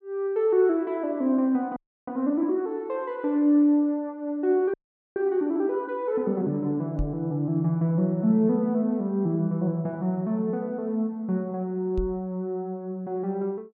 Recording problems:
frozen audio; at 2 s and at 4.5 s
microphone thump; at 7 s and at 12 s; peak -1 dB vs average level

